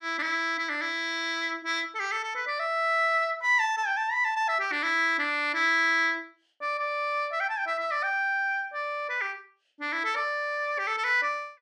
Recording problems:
none

